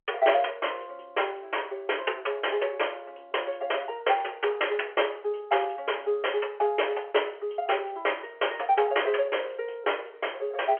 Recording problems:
telephone audio; 340 Hz to 3.3 kHz, G.711

